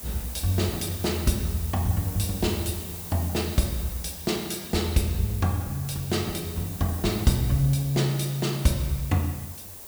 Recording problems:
hiss; SNR 10 dB

